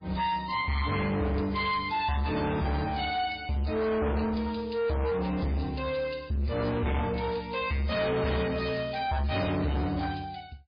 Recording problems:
lossy codec; MP3, log-spectral distance 4 dB, nothing above 4.4 kHz
distorted audio; soft clipping, signal-to-distortion ratio 7 dB

